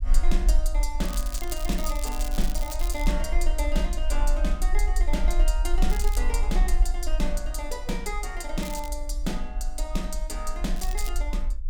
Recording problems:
rumble; below 42 Hz, strongest tone 22 Hz, SNR -4 dB
crackling; 4 times, first at 1 s; loose cable, SNR 8 dB

